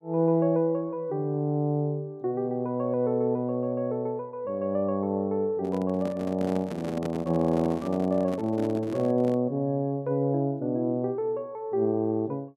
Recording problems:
handling noise; from 5.5 to 9.5 s; peak -4 dB vs average level

